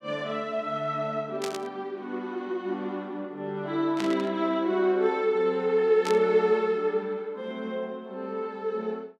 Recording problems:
static burst; at 1.5 s, at 4 s and at 6 s; peak -3 dB vs average level

